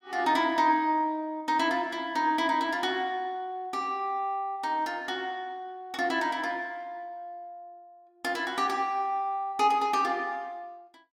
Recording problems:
none

